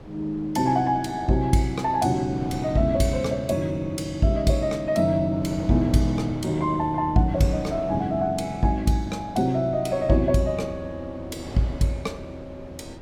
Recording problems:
wind on the microphone; below 460 Hz, SNR 16 dB

